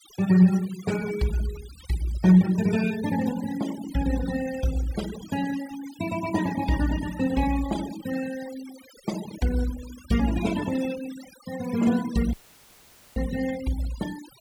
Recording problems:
noise reduction artefacts; signal-to-artefact ratio 15 dB
dropout; at 12 s for 1 s

